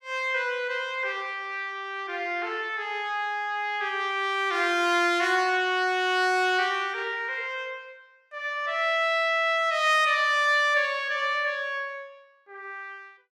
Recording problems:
none

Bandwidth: 16 kHz